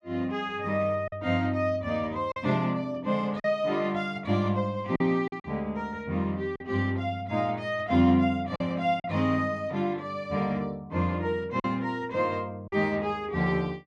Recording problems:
packet loss; 3% of the sound replaced, filled with silence

